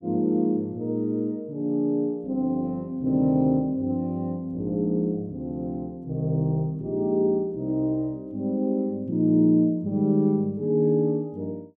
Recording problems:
none

